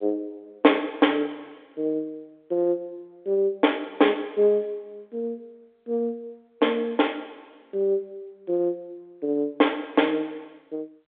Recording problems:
telephone audio; 300 Hz to 3.6 kHz, G.726

